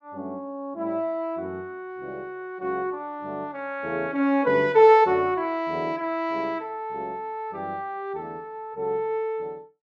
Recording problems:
none

